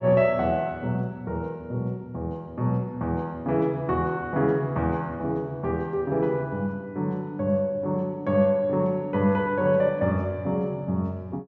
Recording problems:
treble cut off; nothing above 7.6 kHz

